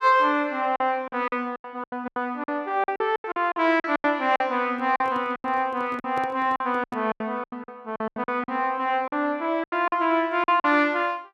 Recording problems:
lost packets; 15% of the sound replaced, filled with silence
microphone handling noise; from 4.5 to 7 s; peak -9 dB vs average level

